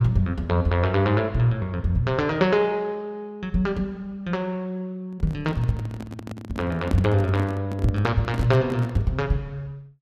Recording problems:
microphone handling noise; from 5 to 9 s; peak 0 dB vs average level

